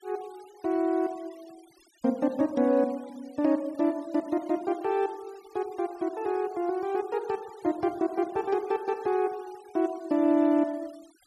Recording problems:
denoising artefacts; signal-to-artefact ratio 26 dB

